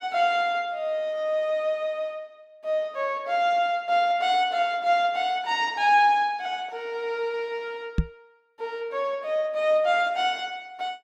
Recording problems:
microphone thump; at 8 s; peak +5 dB vs average level

